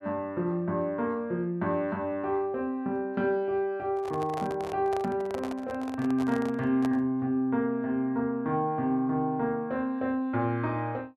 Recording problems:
handling noise; from 4 to 7 s; peak -4 dB vs average level

